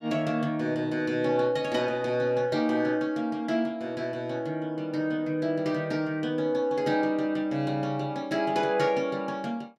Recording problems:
none

